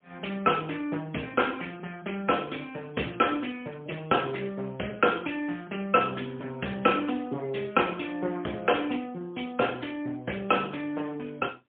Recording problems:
phone line; 220 Hz to 3.4 kHz, AMR-NB, then MP3

